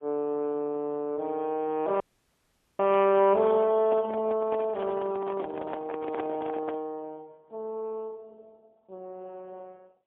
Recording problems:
telephone audio; 220 Hz to 3.3 kHz, AMR-NB, then MP3
audio cutting out; at 2 s for 1 s
handling noise; from 4 to 7 s; peak -5 dB vs average level

